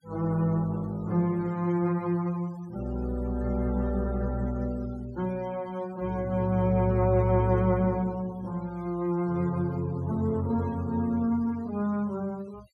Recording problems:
noise reduction artefacts; signal-to-artefact ratio 25 dB

